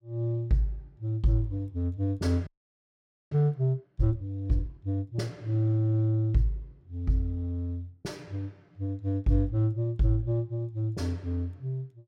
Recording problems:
frozen audio; at 2.5 s for 1 s

